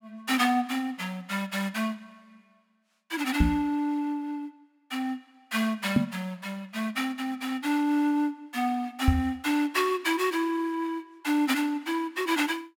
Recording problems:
knock on the microphone; at 3.5 s, at 6 s and at 9 s; peak +10 dB vs average level

